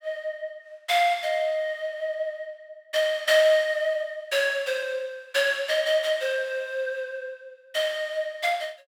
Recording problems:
none

